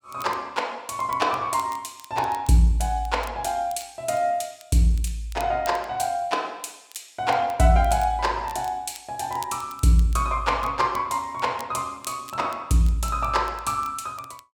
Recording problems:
crackle; vinyl, SNR 23 dB

